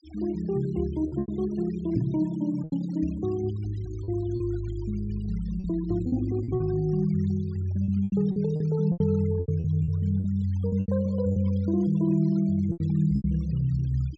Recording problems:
treble cut off; nothing above 8 kHz
denoising artefacts; signal-to-artefact ratio 26 dB
lost packets; 9% of the sound replaced, filled with repeated pitch periods
microphone bump; at 2 s; peak +3 dB vs average level

